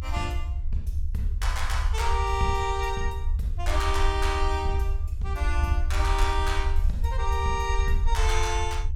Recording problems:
rumble; below 68 Hz, SNR -1 dB

